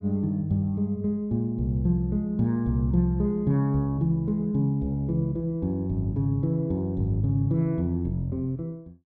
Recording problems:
none

